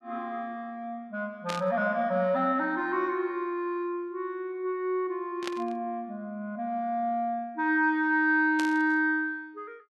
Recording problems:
burst of static; at 1.5 s, at 5.5 s and at 8.5 s; peak -3 dB vs average level

